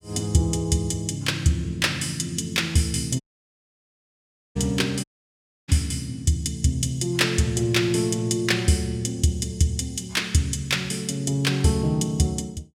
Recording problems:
dropout; at 3 s for 1.5 s and at 5 s for 0.5 s

